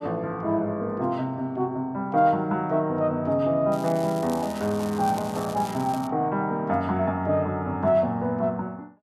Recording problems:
crackle; from 3.5 to 6 s; loose cable, SNR 18 dB

